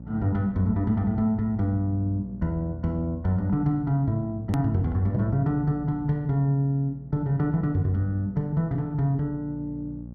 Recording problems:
mains hum; 60 Hz, harmonics up to 600 Hz, SNR 16 dB
hard cut with a click; at 4.5 s

